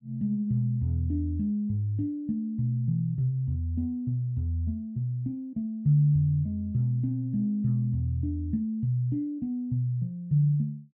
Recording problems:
none

